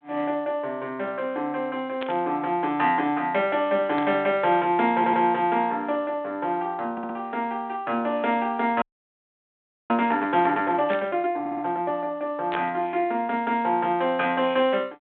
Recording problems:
telephone audio; 240 Hz to 3.7 kHz, G.726
static burst; 4 times, first at 2 s; peak -3 dB vs average level
audio stuttering; at 5 s, at 7 s and at 11 s
frozen audio; at 9 s for 1 s

